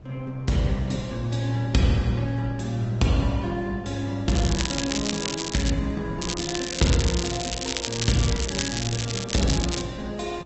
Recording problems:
treble missing; nothing above 7.9 kHz
lossy compression; Opus, log-spectral distance 5 dB
wind noise; below 340 Hz, SNR 23 dB
crackling; from 4.5 to 5.5 s and from 6 to 10 s; loose cable, SNR 5 dB

